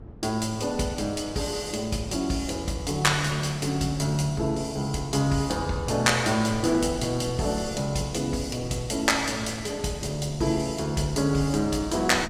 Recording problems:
electrical hum; 50 Hz, harmonics up to 450 Hz, SNR 25 dB
wind on the microphone; below 250 Hz, SNR 17 dB

